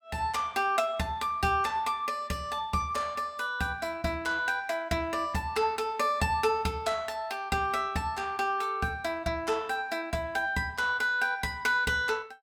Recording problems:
none

